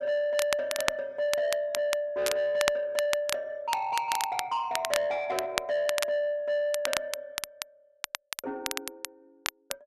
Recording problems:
distorted audio; soft clipping, signal-to-distortion ratio 12 dB
crackling; vinyl, SNR 5 dB

